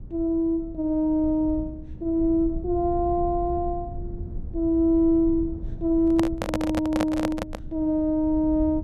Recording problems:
low-frequency rumble; below 88 Hz, SNR 13 dB
microphone handling noise; from 6 to 7.5 s; peak +1 dB vs average level

